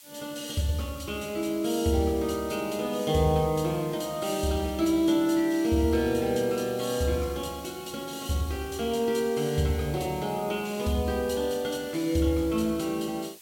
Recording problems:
background hiss; slope +4 dB per octave, SNR 19 dB

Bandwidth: 16.5 kHz